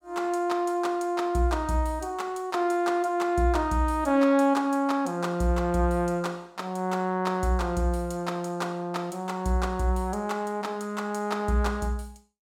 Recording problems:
none

